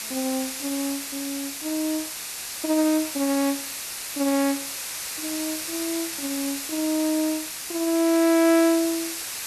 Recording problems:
background hiss; slope +2 dB per octave, SNR 5 dB

